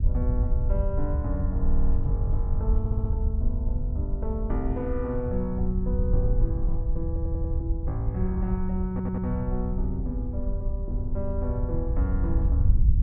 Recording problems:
rumble; below 74 Hz, SNR -4 dB
audio stuttering; 4 times, first at 1.5 s

